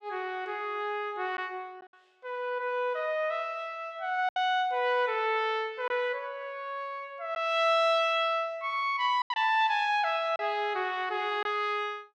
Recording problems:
packet loss; 2% of the sound replaced, filled with silence

